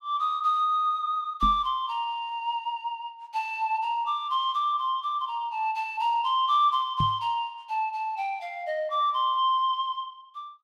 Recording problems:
microphone bump; at 1.5 s and at 7 s; peak +1 dB vs average level

